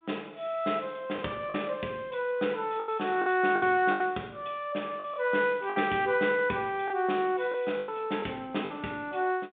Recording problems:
telephone audio; 220 Hz to 3.6 kHz, G.726
packet loss; 7% of the sound replaced, filled with the last packet

